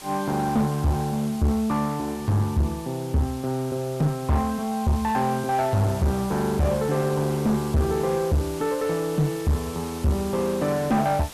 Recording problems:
distorted audio; hard clipping, uneven, signal-to-distortion ratio 7 dB
hiss; slope -2 dB per octave, SNR 16 dB

